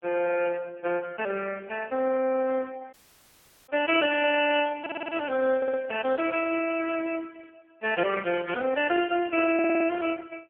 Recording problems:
phone line; 220 Hz to 3.2 kHz, AMR-NB
audio cutting out; at 3 s for 1 s
stutter; at 5 s, at 5.5 s and at 9.5 s

